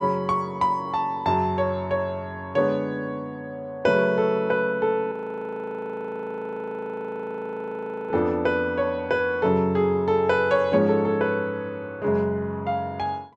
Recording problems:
audio freezing; at 5 s for 3 s

